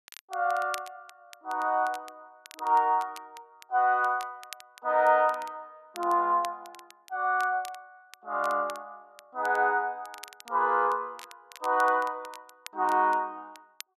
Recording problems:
crackling; vinyl, SNR 22 dB

